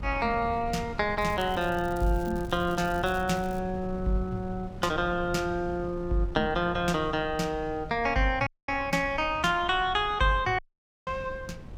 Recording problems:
wind on the microphone; below 150 Hz, SNR 14 dB
crackling; from 1 to 3.5 s; loose cable, SNR 22 dB
dropout; at 8.5 s and at 11 s

